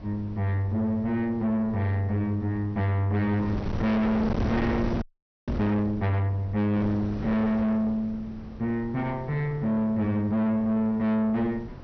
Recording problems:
treble cut off; nothing above 6 kHz
distortion; soft clipping, signal-to-distortion ratio 5 dB
wind on the microphone; below 410 Hz, SNR 8 dB
audio freezing; at 5 s

